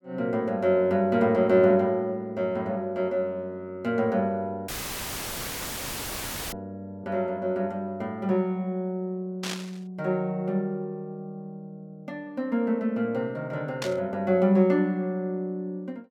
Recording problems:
dropout; at 4.5 s for 2 s; filled with static
burst of static; at 9.5 s and at 14 s; peak -2 dB vs average level

